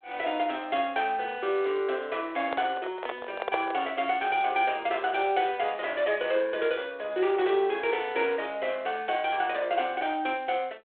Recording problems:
phone line; 300 Hz to 3.7 kHz, G.726
handling noise; from 2.5 to 4 s; peak +2 dB vs average level

